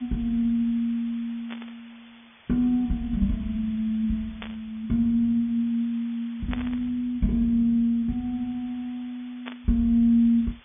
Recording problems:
treble cut off; nothing above 3.5 kHz
hiss; SNR 27 dB
static burst; 4 times, first at 1.5 s; peak -6 dB vs average level

